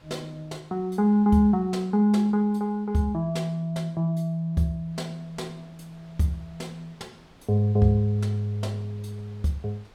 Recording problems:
wind noise; below 2 kHz, SNR 31 dB

